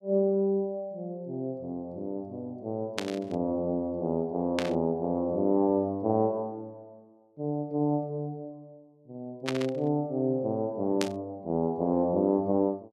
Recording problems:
static burst; 4 times, first at 3 s; peak +2 dB vs average level

